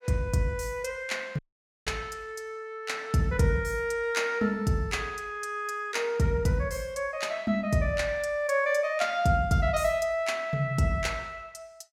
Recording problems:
audio cutting out; at 1.5 s

